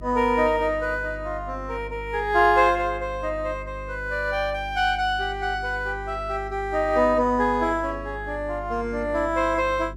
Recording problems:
hum; 50 Hz, harmonics up to 400 Hz, SNR 15 dB

